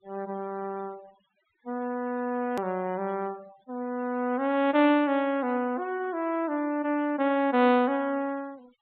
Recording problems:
treble cut off; nothing above 4 kHz
denoising artefacts; signal-to-artefact ratio 26 dB
click at an edit; at 2.5 s

